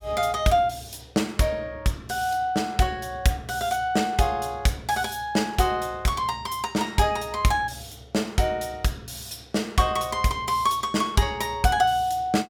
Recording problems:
none

